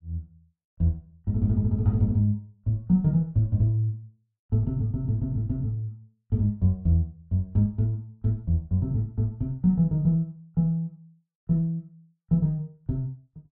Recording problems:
none

